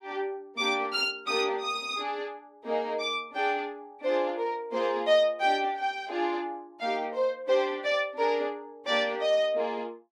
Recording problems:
none

